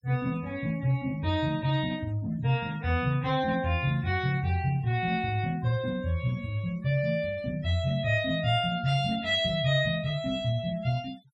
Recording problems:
denoising artefacts; signal-to-artefact ratio 25 dB

